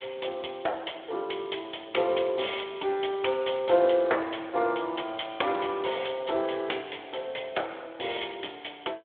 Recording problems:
telephone audio; 320 Hz to 3.6 kHz, Speex

